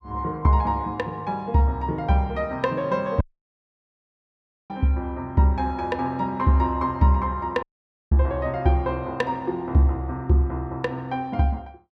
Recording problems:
dropout; at 3 s for 1.5 s and at 7.5 s

